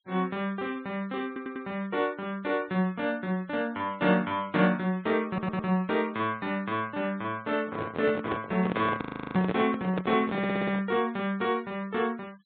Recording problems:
treble missing; nothing above 4 kHz
noise reduction artefacts; signal-to-artefact ratio 26 dB
audio stuttering; at 1.5 s, at 5.5 s and at 10 s
handling noise; from 7.5 to 11 s; peak +2 dB vs average level
audio freezing; at 9 s

